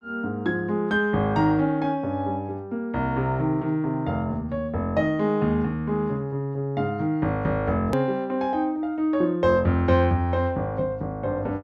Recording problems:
edit click; at 8 s

